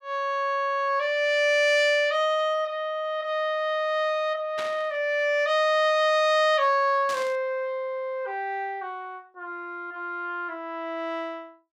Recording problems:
burst of static; at 4.5 s and at 7 s; peak -7 dB vs average level

